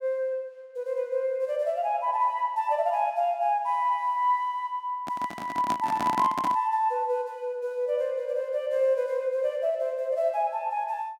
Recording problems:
handling noise; from 5 to 6.5 s; peak 0 dB vs average level

